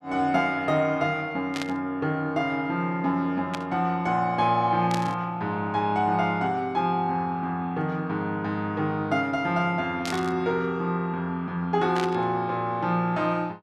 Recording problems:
burst of static; 5 times, first at 1.5 s; peak -3 dB vs average level

